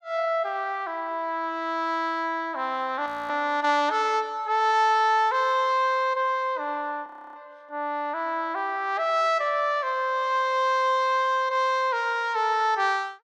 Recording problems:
audio freezing; at 3 s and at 7 s

